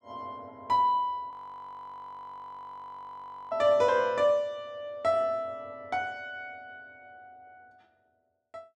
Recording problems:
audio freezing; at 1.5 s for 2 s

